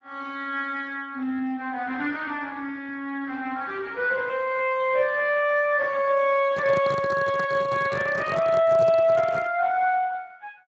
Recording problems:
lossy compression; Speex, log-spectral distance 3 dB
handling noise; from 6.5 to 9.5 s; peak -5 dB vs average level

